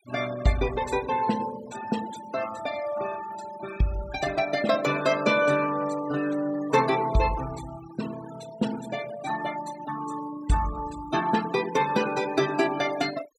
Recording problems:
noise reduction artefacts; signal-to-artefact ratio 14 dB

